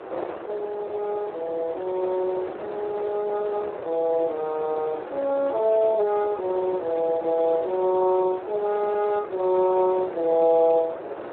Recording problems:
phone line; 300 Hz to 2.2 kHz, Speex
wind on the microphone; below 830 Hz, SNR 11 dB

